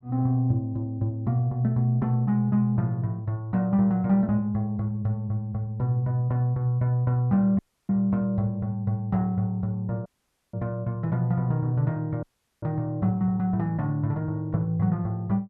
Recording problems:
audio cutting out; at 7.5 s, at 10 s and at 12 s

